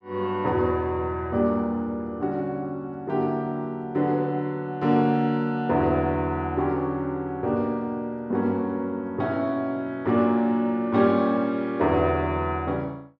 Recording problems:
none

